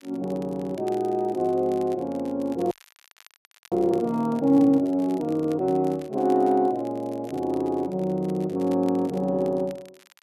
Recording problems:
crackling; vinyl, SNR 27 dB
audio freezing; at 2.5 s for 1 s

